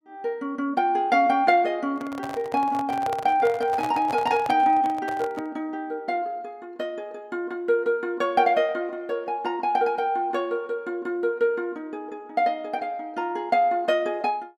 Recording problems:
handling noise; from 2 to 5.5 s; peak -4 dB vs average level

